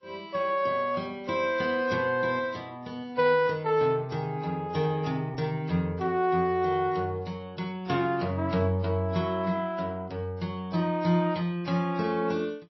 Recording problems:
lossy codec; MP3, then AAC, log-spectral distance 2 dB, nothing above 5.7 kHz

